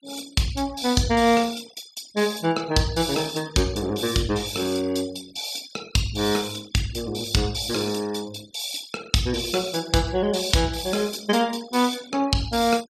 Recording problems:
denoising artefacts; signal-to-artefact ratio 19 dB

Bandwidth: 15.5 kHz